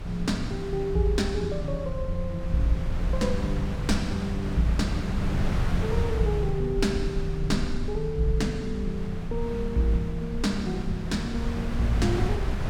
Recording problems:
low-frequency rumble; below 52 Hz, SNR 10 dB
wind on the microphone; below 180 Hz, SNR 5 dB

